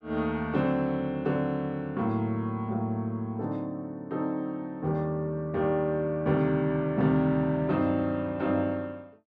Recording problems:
none

